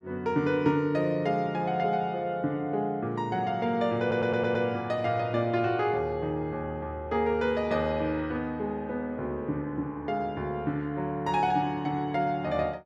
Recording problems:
stutter; at 4 s

